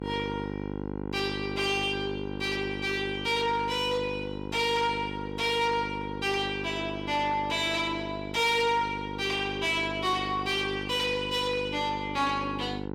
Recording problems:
distorted audio; soft clipping, signal-to-distortion ratio 10 dB
hum; 50 Hz, harmonics up to 1.5 kHz, SNR 8 dB

